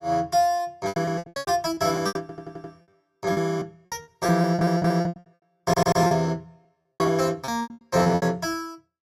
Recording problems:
packet loss; 21% of the sound replaced, filled with repeated pitch periods
audio stuttering; at 2 s, at 4.5 s and at 5.5 s

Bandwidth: 15.5 kHz